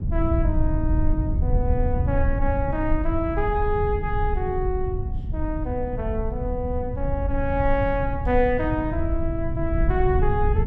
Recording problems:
rumble; below 90 Hz, SNR 0 dB

